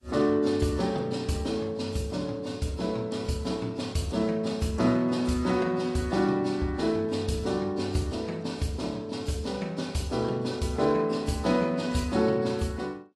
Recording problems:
lossy codec; AAC, log-spectral distance 3 dB, nothing above 11.3 kHz

